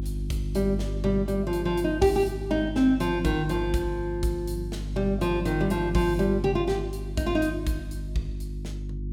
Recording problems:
hum; 50 Hz, harmonics up to 350 Hz, SNR 7 dB

